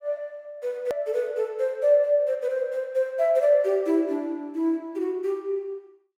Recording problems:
edit click; at 1 s

